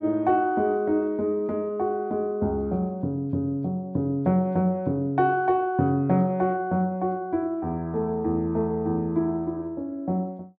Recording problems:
none

